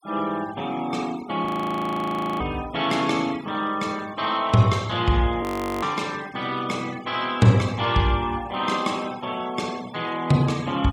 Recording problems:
denoising artefacts; signal-to-artefact ratio 19 dB
frozen audio; at 1.5 s for 1 s and at 5.5 s

